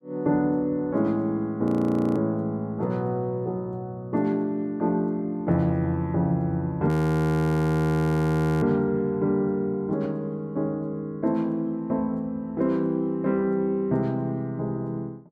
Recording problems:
frozen audio; at 1.5 s for 0.5 s and at 7 s for 1.5 s

